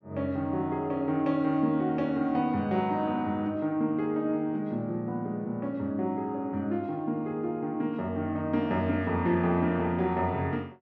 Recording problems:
none

